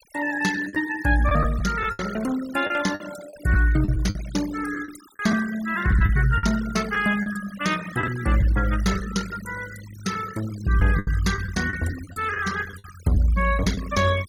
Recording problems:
noise reduction artefacts; signal-to-artefact ratio 14 dB
lost packets; 8% of the sound replaced, filled with the last packet

